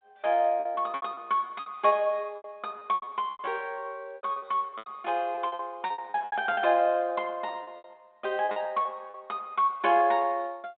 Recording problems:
telephone audio; 190 Hz to 3.6 kHz, G.726
packet loss; 16% of the sound replaced, filled with repeated pitch periods

